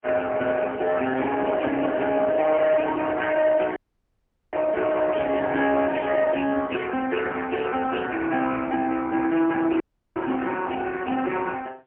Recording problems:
telephone audio; 220 Hz to 3.1 kHz, AMR-NB, then MP3
distortion; soft clipping, signal-to-distortion ratio 12 dB
static burst; at 1.5 s; peak -22 dB vs average level
audio cutting out; at 4 s for 1 s and at 10 s

